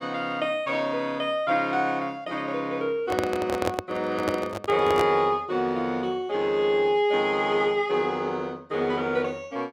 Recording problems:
handling noise; from 3 to 5 s; peak +2 dB vs average level

